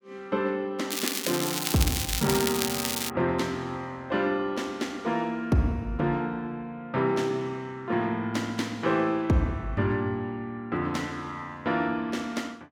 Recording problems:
crackle; from 1 to 3 s; loose cable, SNR 0 dB

